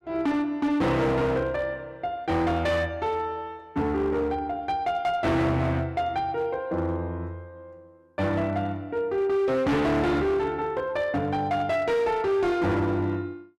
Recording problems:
distortion; hard clipping, signal-to-distortion ratio 8 dB

